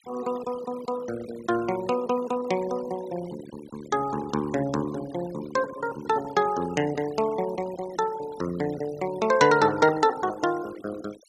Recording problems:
noise reduction artefacts; signal-to-artefact ratio 17 dB

